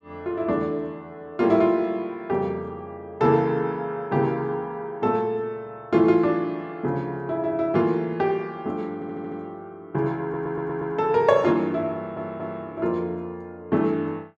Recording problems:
audio stuttering; at 9 s, at 10 s and at 12 s

